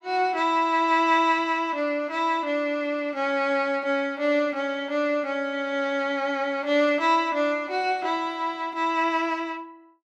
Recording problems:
none

